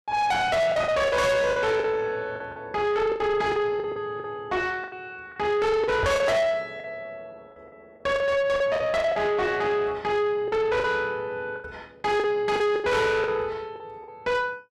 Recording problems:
distortion; soft clipping, signal-to-distortion ratio 8 dB
lost packets; 10% of the sound replaced, filled with the last packet
knock on the microphone; at 6 s; peak +1 dB vs average level

